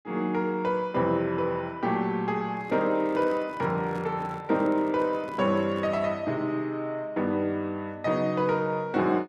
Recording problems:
handling noise; from 2.5 to 6 s; peak -10 dB vs average level

